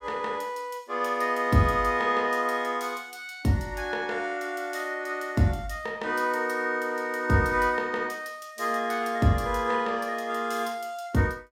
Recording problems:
none

